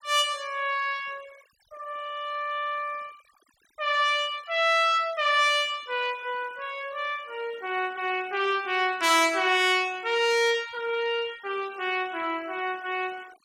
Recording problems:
noise reduction artefacts; signal-to-artefact ratio 23 dB

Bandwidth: 17 kHz